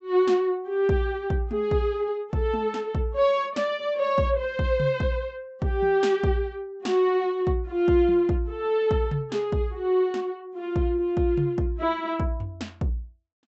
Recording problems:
treble missing; nothing above 8 kHz

